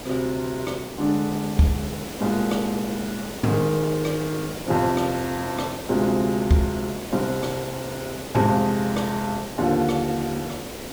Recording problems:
background hiss; SNR 10 dB

